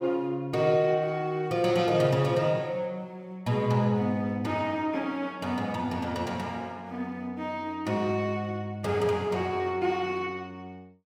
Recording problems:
none

